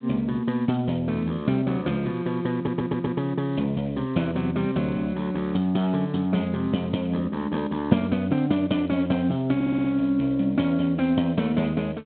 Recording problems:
telephone audio; 130 Hz to 3.7 kHz, G.726
stutter; at 2.5 s and at 9.5 s

